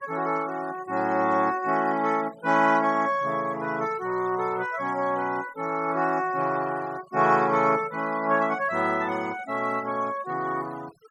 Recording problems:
denoising artefacts; signal-to-artefact ratio 20 dB

